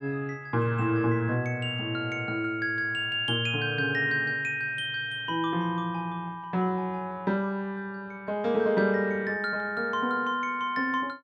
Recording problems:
none

